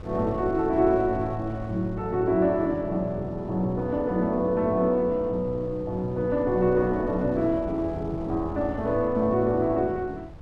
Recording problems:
wind noise; below 130 Hz, SNR 17 dB

